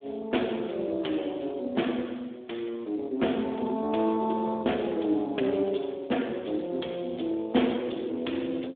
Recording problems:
phone line; 190 Hz to 3.6 kHz, Speex

